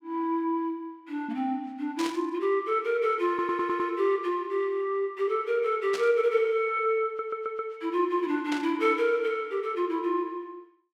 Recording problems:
burst of static; at 2 s, at 6 s and at 8.5 s; peak -4 dB vs average level
stutter; at 3.5 s and at 7 s

